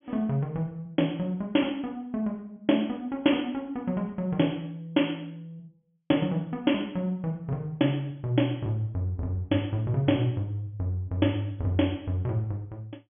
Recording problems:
treble cut off; nothing above 3.4 kHz

